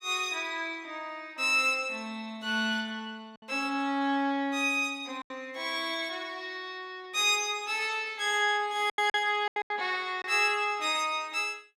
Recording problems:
lost packets; 4% of the sound replaced, filled with silence

